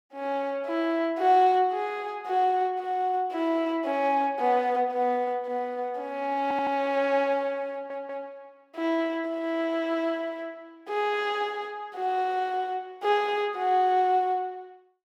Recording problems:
stutter; at 6.5 s and at 7.5 s

